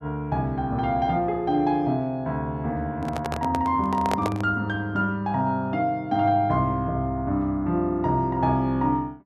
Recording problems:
microphone handling noise; from 3 to 4.5 s; peak +1 dB vs average level

